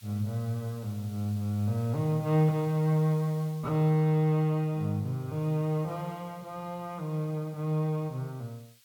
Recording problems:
hiss; SNR 25 dB

